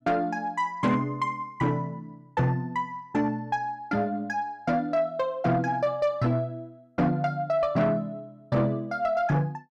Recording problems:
distorted audio; soft clipping, signal-to-distortion ratio 11 dB

